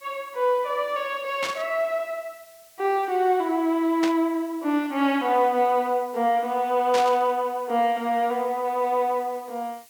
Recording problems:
background hiss; slope +2 dB per octave, SNR 26 dB
static burst; at 1.5 s, at 4 s and at 7 s; peak -2 dB vs average level

